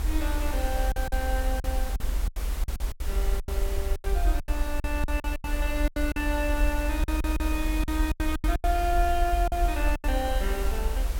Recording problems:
background hiss; slope -4 dB per octave, SNR 8 dB
rumble; below 62 Hz, strongest tone 42 Hz, SNR -1 dB
lost packets; 12% of the sound replaced, filled with silence
crackle; from 3 to 6.5 s and from 7 to 8 s; loose cable, SNR 27 dB
audio stuttering; at 7 s

